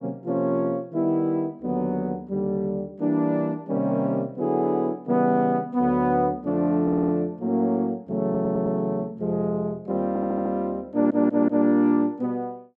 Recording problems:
audio stuttering; 4 times, first at 7 s

